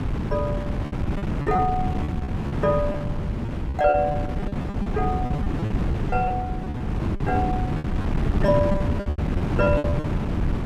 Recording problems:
wind noise; below 250 Hz, SNR 0 dB
packet loss; 14% of the sound replaced, filled with repeated pitch periods

